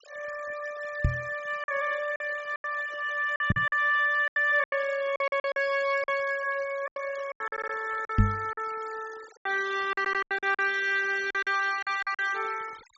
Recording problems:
treble cut off; nothing above 8 kHz
denoising artefacts; signal-to-artefact ratio 19 dB
packet loss; 11% of the sound replaced, filled with silence
microphone bump; at 1 s, at 3.5 s and at 8 s; peak +9 dB vs average level
stutter; at 7.5 s and at 10 s

